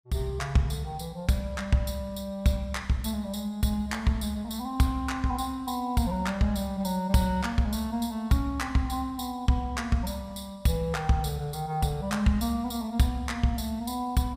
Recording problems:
none

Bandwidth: 15.5 kHz